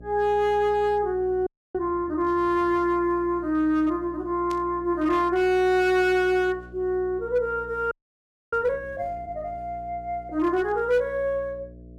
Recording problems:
distortion; hard clipping, signal-to-distortion ratio 12 dB
hum; 60 Hz, harmonics up to 660 Hz, SNR 21 dB
audio freezing; at 1.5 s and at 8 s for 0.5 s
burst of static; at 4.5 s; peak -13 dB vs average level

